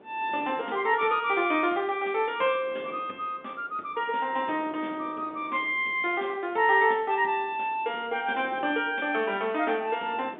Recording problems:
phone line; 260 Hz to 3.6 kHz, G.711
wind noise; below 720 Hz, SNR 22 dB

